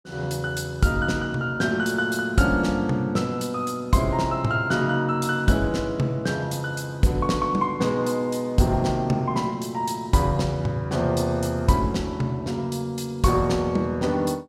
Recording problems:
none

